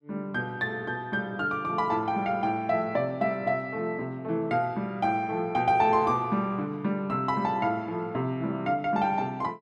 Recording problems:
none

